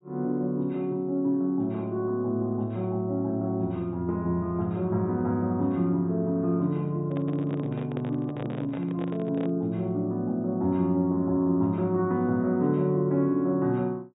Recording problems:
treble cut off; nothing above 4 kHz
microphone handling noise; from 7 to 9.5 s; peak -7 dB vs average level

